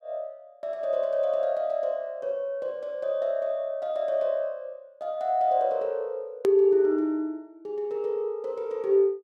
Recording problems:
edit click; at 6.5 s

